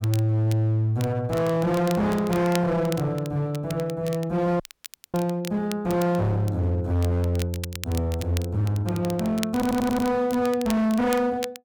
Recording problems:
distorted audio; hard clipping, uneven, signal-to-distortion ratio 7 dB
crackling; vinyl, SNR 16 dB
audio cutting out; at 4.5 s for 0.5 s
stutter; at 9.5 s

